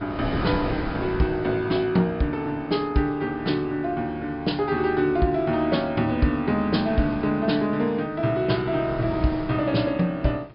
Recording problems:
treble missing; nothing above 5.5 kHz
wind noise; below 580 Hz, SNR 12 dB

